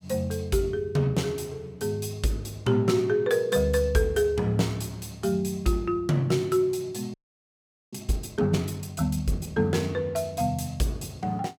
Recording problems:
frozen audio; at 7 s for 1 s

